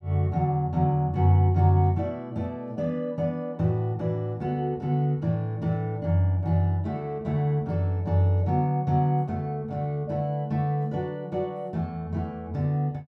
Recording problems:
none

